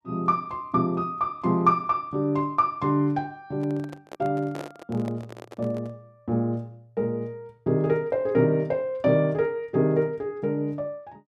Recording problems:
handling noise; from 3.5 to 6 s; peak -5 dB vs average level

